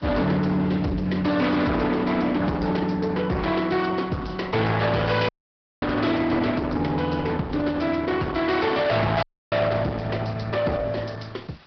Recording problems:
treble cut off; nothing above 5.3 kHz
lossy compression; Opus, log-spectral distance 5 dB
distortion; hard clipping, uneven, signal-to-distortion ratio 6 dB
background hiss; SNR 29 dB
dropout; at 5.5 s for 0.5 s and at 9 s

